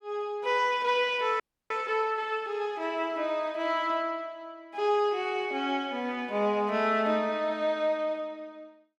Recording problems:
audio freezing; at 1.5 s

